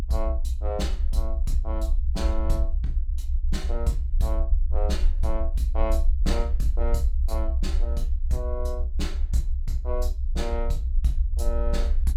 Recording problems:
low-frequency rumble; below 62 Hz, strongest tone 26 Hz, SNR -5 dB

